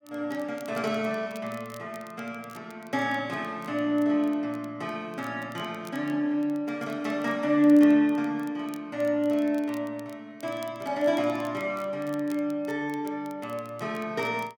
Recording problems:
crackle; vinyl, SNR 26 dB

